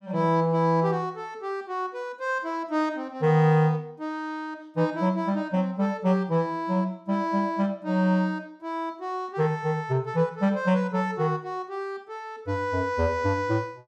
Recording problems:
none

